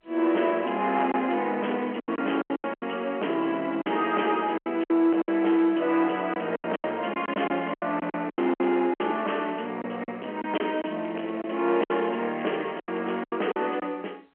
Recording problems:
telephone audio; 280 Hz to 3.1 kHz, G.711
distortion; soft clipping, signal-to-distortion ratio 13 dB
lost packets; 11% of the sound replaced, filled with silence
crackle; from 11 to 13 s; loose cable, SNR 27 dB

